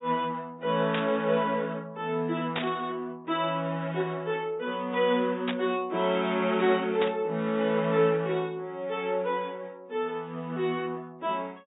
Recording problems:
treble missing; nothing above 4 kHz
burst of static; 4 times, first at 1 s; peak +1 dB vs average level

